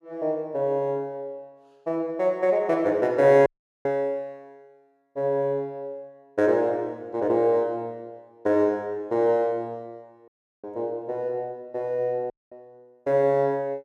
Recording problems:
audio cutting out; at 3.5 s, at 10 s and at 12 s

